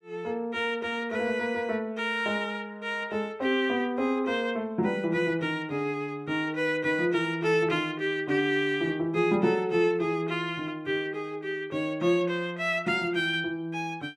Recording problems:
none

